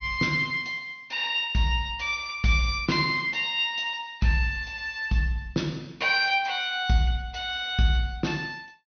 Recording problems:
treble missing; nothing above 6.2 kHz

